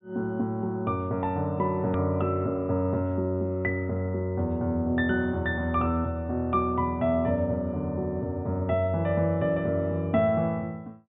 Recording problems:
low-pass filter; nothing above 4 kHz
edit click; at 2 s

